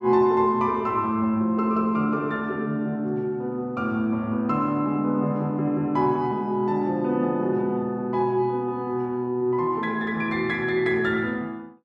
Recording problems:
none

